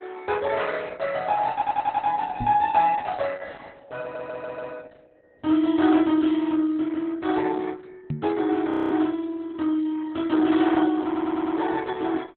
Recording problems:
lossy compression; Opus, log-spectral distance 4 dB, nothing above 3.8 kHz
stutter; at 1.5 s, at 4 s and at 11 s
microphone thump; at 2.5 s and at 8 s; peak -1 dB vs average level
audio freezing; at 8.5 s

